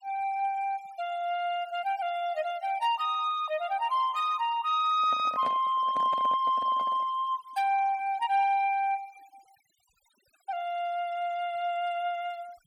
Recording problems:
denoising artefacts; signal-to-artefact ratio 24 dB
microphone handling noise; from 5 to 7 s; peak -6 dB vs average level

